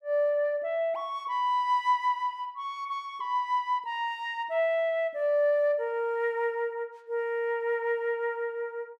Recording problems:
none

